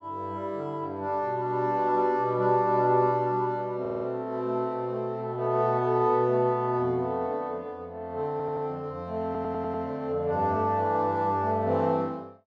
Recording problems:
audio stuttering; at 4 s, at 8.5 s and at 9.5 s

